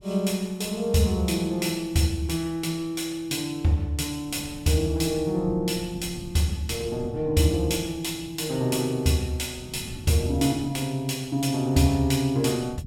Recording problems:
wind on the microphone; below 200 Hz, SNR 17 dB

